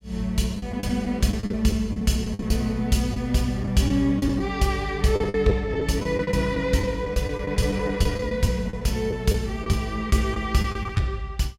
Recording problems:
lost packets; 11% of the sound replaced, filled with the last packet

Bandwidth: 16 kHz